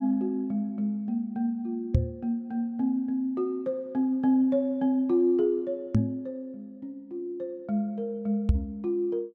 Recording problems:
knock on the microphone; at 2 s, at 6 s and at 8.5 s; peak +9 dB vs average level

